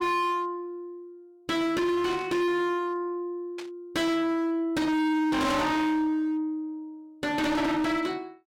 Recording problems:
distorted audio; hard clipping, signal-to-distortion ratio 6 dB
static burst; at 2 s and at 3.5 s; peak -9 dB vs average level

